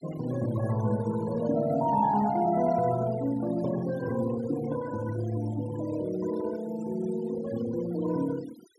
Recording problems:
denoising artefacts; signal-to-artefact ratio 16 dB

